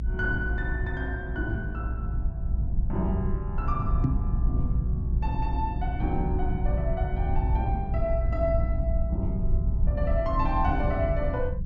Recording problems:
low-pass filter; nothing above 8 kHz
rumble; below 90 Hz, SNR -3 dB
microphone thump; at 4 s; peak +8 dB vs average level

